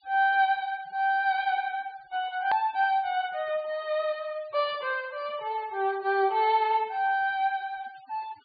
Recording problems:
treble missing; nothing above 4.7 kHz
denoising artefacts; signal-to-artefact ratio 26 dB
hard cut with a click; at 2.5 s

